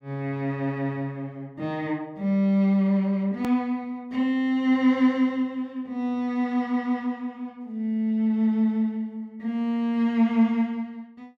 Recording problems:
hard cut with a click; at 3.5 s

